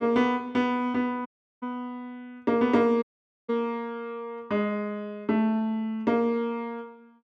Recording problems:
audio cutting out; at 1.5 s and at 3 s

